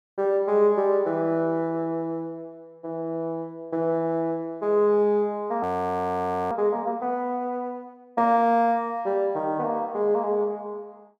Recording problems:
frozen audio; at 5.5 s for 1 s

